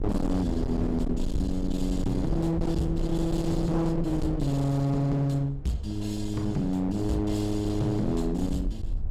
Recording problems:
distortion; hard clipping, signal-to-distortion ratio 7 dB
low-frequency rumble; below 150 Hz, SNR 7 dB
wind noise; below 410 Hz, SNR 22 dB

